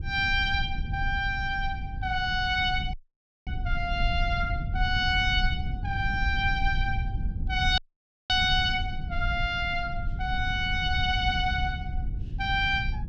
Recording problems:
low-frequency rumble; below 92 Hz, SNR 6 dB
audio cutting out; at 3 s for 0.5 s and at 8 s for 0.5 s

